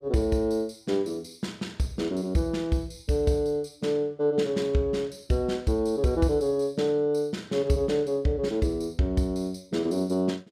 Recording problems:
none

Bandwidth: 15 kHz